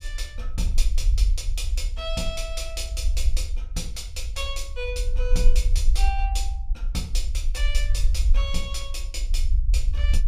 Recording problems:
rumble; below 48 Hz, strongest tone 20 Hz, SNR -6 dB

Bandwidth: 15.5 kHz